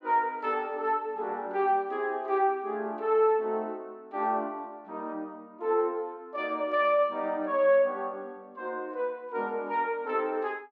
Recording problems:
none

